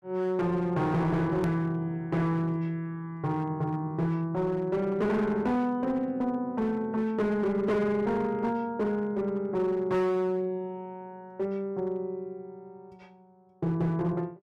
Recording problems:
distorted audio; hard clipping, signal-to-distortion ratio 10 dB
hard cut with a click; at 1.5 s

